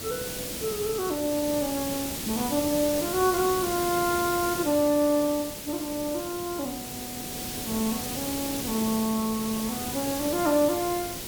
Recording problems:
background hiss; SNR 5 dB

